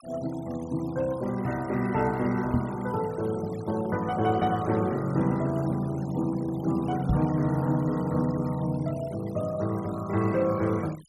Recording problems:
denoising artefacts; signal-to-artefact ratio 21 dB
microphone thump; at 2.5 s and at 7 s; peak +5 dB vs average level

